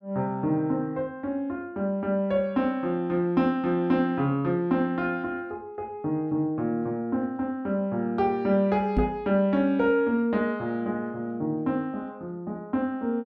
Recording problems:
knock on the microphone; at 9 s; peak +5 dB vs average level

